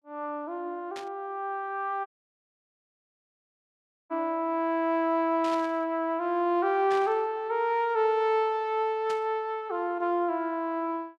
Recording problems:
static burst; 4 times, first at 1 s; peak -9 dB vs average level
dropout; at 2 s for 2 s

